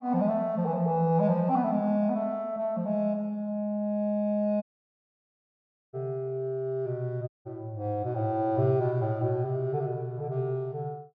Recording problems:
dropout; at 4.5 s for 1.5 s and at 7.5 s

